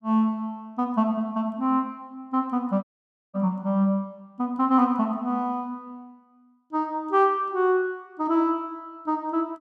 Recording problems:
dropout; at 3 s for 0.5 s

